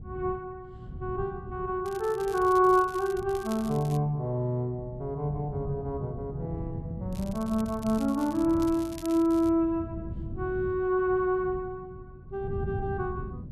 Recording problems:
wind noise; below 160 Hz, SNR 13 dB
crackle; from 2 to 4 s and from 7 to 9.5 s; loose cable, SNR 20 dB

